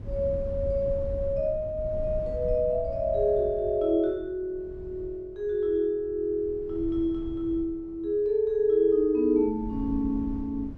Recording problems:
wind on the microphone; below 100 Hz, SNR 12 dB

